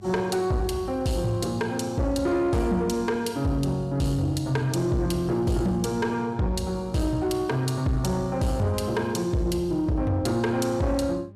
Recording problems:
distorted audio; soft clipping, signal-to-distortion ratio 11 dB
hum; 50 Hz, harmonics up to 800 Hz, SNR 22 dB

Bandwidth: 14.5 kHz